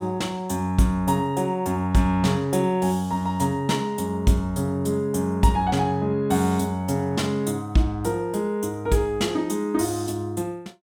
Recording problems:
none

